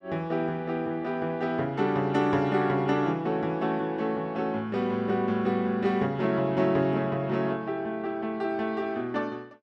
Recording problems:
none

